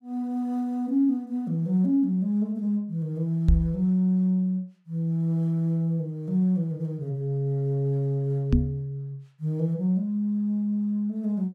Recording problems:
knock on the microphone; at 3.5 s and at 8.5 s; peak +8 dB vs average level

